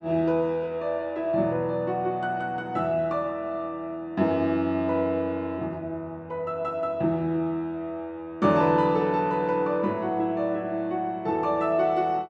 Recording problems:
none

